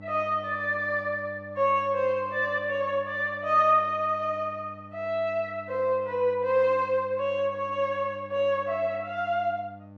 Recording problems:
electrical hum; 50 Hz, harmonics up to 1.2 kHz, SNR 20 dB

